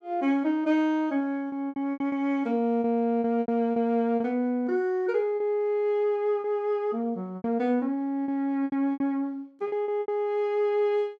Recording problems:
lost packets; 9% of the sound replaced, filled with repeated pitch periods

